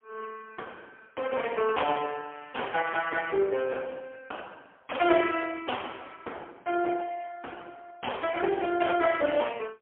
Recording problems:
phone line; 300 Hz to 3.3 kHz, AMR-NB, then MP3

